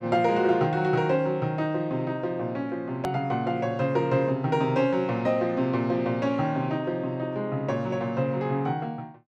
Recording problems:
hard cut with a click; at 3 s

